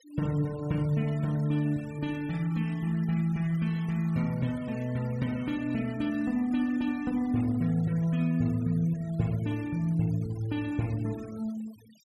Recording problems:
noise reduction artefacts; signal-to-artefact ratio 23 dB

